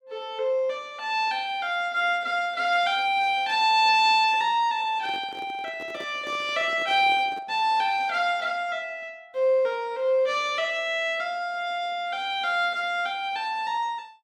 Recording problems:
microphone handling noise; from 5 to 7.5 s; peak -12 dB vs average level

